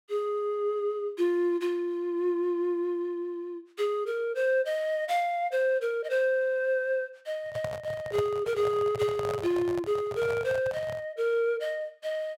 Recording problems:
handling noise; from 7.5 to 11 s; peak -2 dB vs average level

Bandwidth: 16 kHz